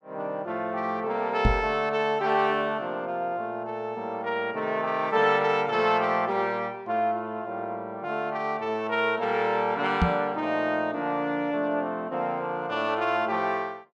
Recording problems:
microphone bump; at 1.5 s and at 10 s; peak +7 dB vs average level

